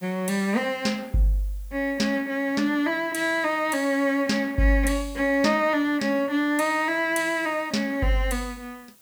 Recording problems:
background hiss; slope -1 dB per octave, SNR 28 dB

